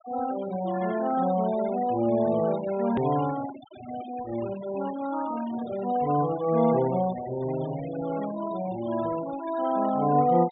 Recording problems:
treble cut off; nothing above 4 kHz
denoising artefacts; signal-to-artefact ratio 16 dB
click at an edit; at 3 s

